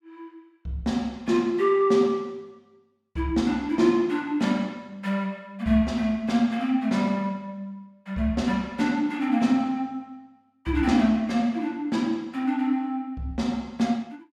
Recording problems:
none

